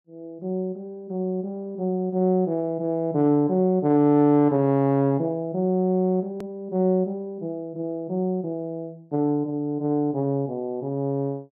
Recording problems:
edit click; at 6.5 s

